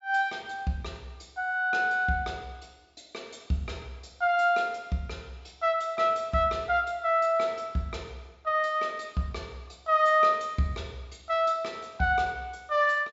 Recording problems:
treble missing; nothing above 7.4 kHz

